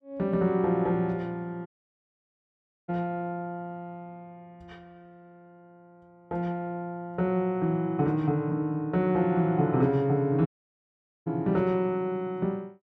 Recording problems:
audio cutting out; at 1.5 s for 1 s and at 10 s for 1 s

